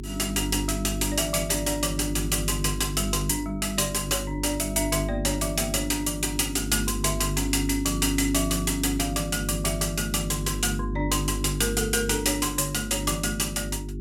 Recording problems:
hum; 50 Hz, harmonics up to 400 Hz, SNR 7 dB

